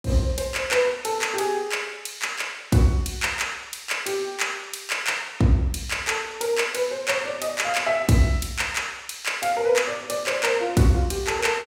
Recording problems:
none

